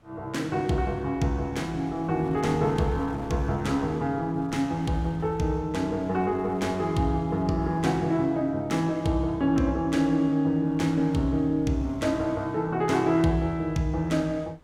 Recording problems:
wind noise; below 600 Hz, SNR 23 dB

